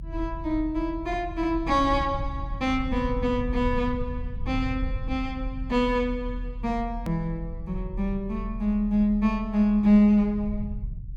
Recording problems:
low-frequency rumble; below 74 Hz, strongest tone 40 Hz, SNR 9 dB
hard cut with a click; at 7 s

